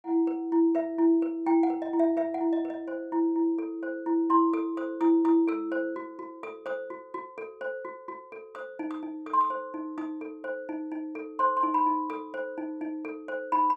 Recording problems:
none

